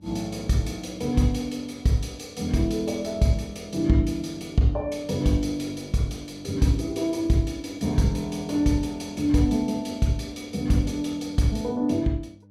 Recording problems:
hum; 50 Hz, harmonics up to 600 Hz, SNR 26 dB

